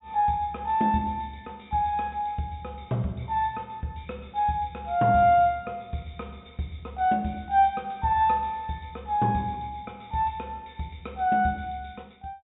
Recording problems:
treble cut off; nothing above 4 kHz

